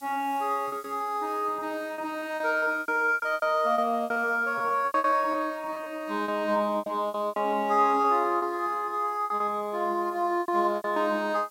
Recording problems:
background hiss; SNR 28 dB
lost packets; 13% of the sound replaced, filled with repeated pitch periods

